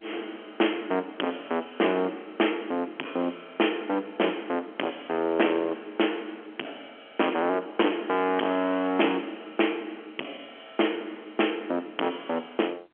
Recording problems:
telephone audio; 260 Hz to 3.3 kHz, G.711
distorted audio; hard clipping, uneven, signal-to-distortion ratio 7 dB

